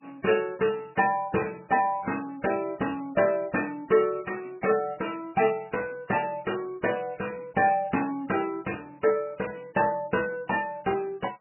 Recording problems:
lossy codec; MP3, log-spectral distance 7 dB, nothing above 2.8 kHz

